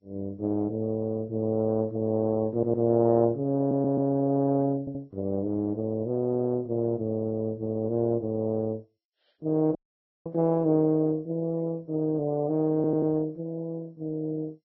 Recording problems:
codec artefacts; MP2, then Vorbis, log-spectral distance 2 dB
audio stuttering; 4 times, first at 2.5 s
dropout; at 10 s for 0.5 s

